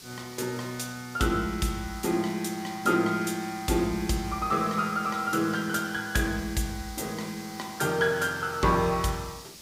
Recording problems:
hiss; SNR 16 dB

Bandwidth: 15.5 kHz